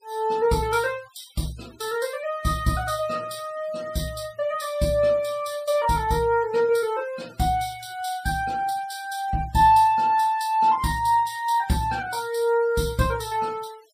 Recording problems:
noise reduction artefacts; signal-to-artefact ratio 23 dB

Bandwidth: 15 kHz